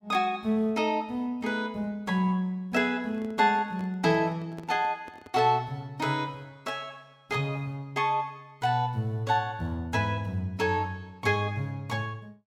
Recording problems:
handling noise; from 3 to 5.5 s; peak -11 dB vs average level

